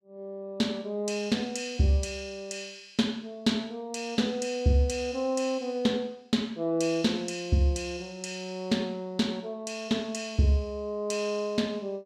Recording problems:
none

